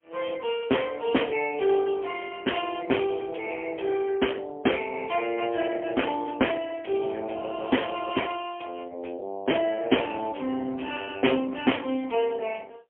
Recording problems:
phone line; 240 Hz to 3.2 kHz, AMR-NB, then MP3

